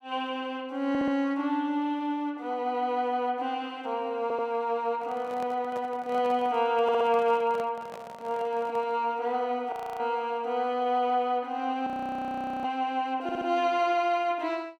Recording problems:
stutter; 4 times, first at 1 s
microphone handling noise; from 5 to 9 s; peak -9 dB vs average level
frozen audio; at 9.5 s and at 12 s for 1 s

